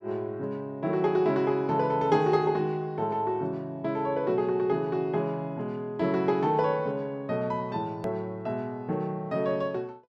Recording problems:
click at an edit; at 8 s

